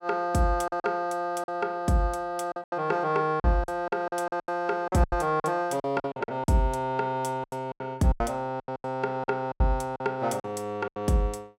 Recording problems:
lost packets; 14% of the sound replaced, filled with silence

